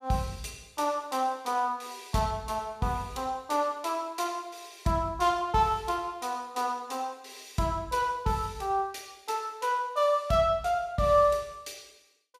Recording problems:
none

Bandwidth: 14.5 kHz